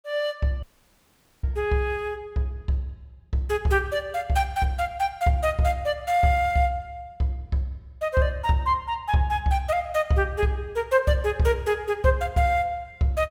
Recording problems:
audio cutting out; at 0.5 s for 1 s

